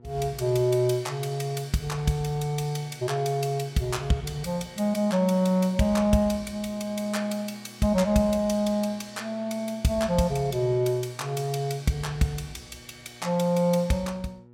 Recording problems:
hum; 60 Hz, harmonics up to 1.3 kHz, SNR 26 dB

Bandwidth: 16.5 kHz